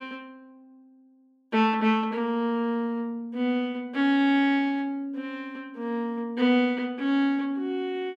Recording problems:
none

